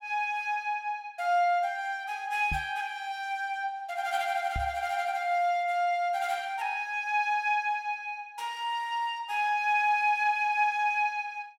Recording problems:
microphone bump; at 2.5 s and at 4.5 s; peak -3 dB vs average level

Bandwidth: 16 kHz